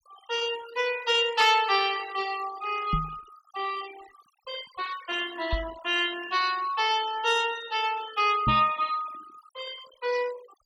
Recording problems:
denoising artefacts; signal-to-artefact ratio 16 dB
knock on the microphone; at 3 s, at 5.5 s and at 8.5 s; peak +2 dB vs average level

